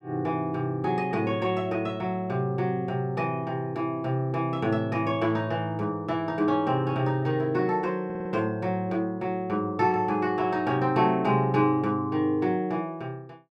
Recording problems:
audio stuttering; at 8 s

